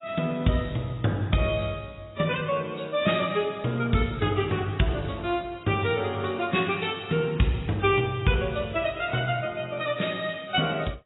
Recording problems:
lossy compression; AAC, log-spectral distance 5 dB, nothing above 3.8 kHz

